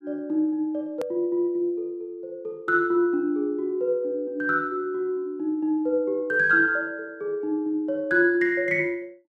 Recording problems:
click at an edit; at 1 s

